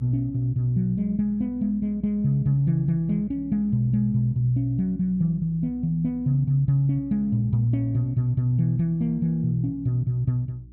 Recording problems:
electrical hum; 60 Hz, harmonics up to 360 Hz, SNR 22 dB

